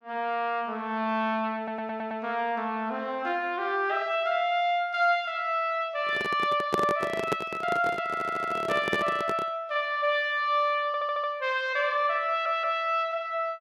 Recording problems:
stutter; 4 times, first at 1.5 s
handling noise; from 6 to 9.5 s; peak +4 dB vs average level

